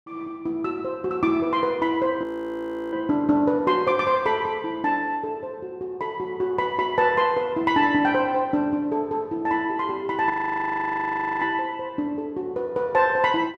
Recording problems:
frozen audio; at 2 s for 0.5 s and at 10 s for 1 s

